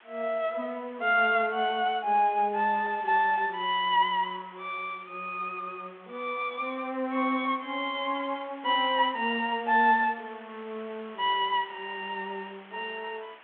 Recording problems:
telephone audio; 300 Hz to 3.4 kHz, G.726
background hiss; SNR 24 dB

